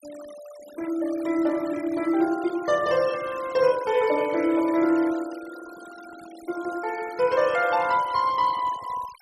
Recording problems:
denoising artefacts; signal-to-artefact ratio 19 dB

